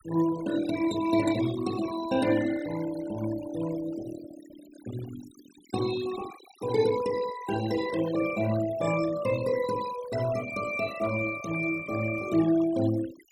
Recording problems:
denoising artefacts; signal-to-artefact ratio 13 dB

